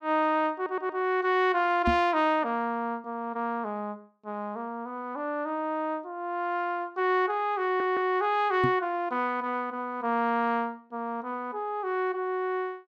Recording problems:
audio stuttering; at 0.5 s and at 7.5 s
microphone bump; at 2 s and at 8.5 s; peak +4 dB vs average level

